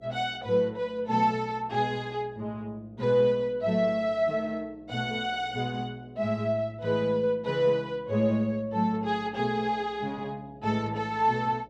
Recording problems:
hum; 60 Hz, harmonics up to 720 Hz, SNR 27 dB

